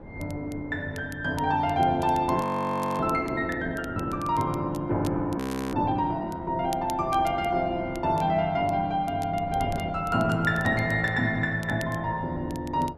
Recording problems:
wind noise; below 440 Hz, SNR 16 dB
crackling; vinyl, SNR 23 dB
frozen audio; at 2.5 s for 0.5 s and at 5.5 s

